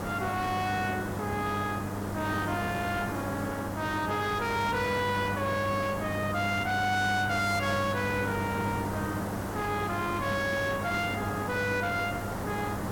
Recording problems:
distortion; soft clipping, signal-to-distortion ratio 10 dB
hum; 50 Hz, harmonics up to 900 Hz, SNR 7 dB
background hiss; SNR 5 dB

